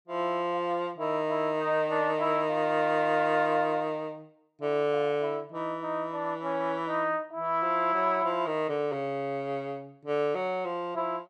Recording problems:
none

